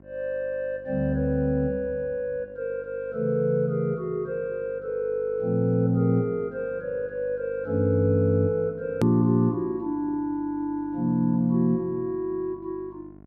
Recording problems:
hum; 50 Hz, harmonics up to 1.4 kHz, SNR 24 dB
click at an edit; at 9 s

